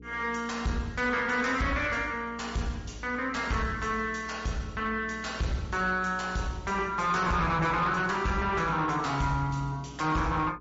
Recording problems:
treble cut off; nothing above 7.3 kHz
lossy codec; MP3, log-spectral distance 3 dB
distorted audio; soft clipping, signal-to-distortion ratio 11 dB
hum; 60 Hz, harmonics up to 480 Hz, SNR 20 dB

